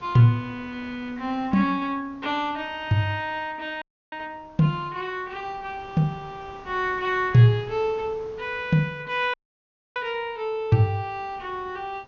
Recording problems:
treble missing; nothing above 6.9 kHz
wind noise; below 1.1 kHz, SNR 24 dB
audio cutting out; at 4 s and at 9.5 s for 0.5 s

